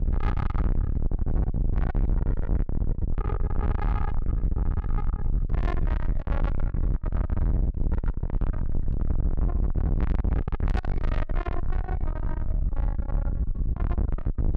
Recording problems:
distortion; soft clipping, signal-to-distortion ratio 7 dB
wind on the microphone; below 88 Hz, SNR -10 dB

